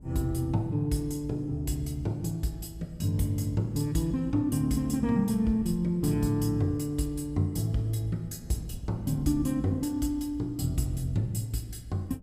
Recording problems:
wind noise; below 160 Hz, SNR 18 dB

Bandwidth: 15.5 kHz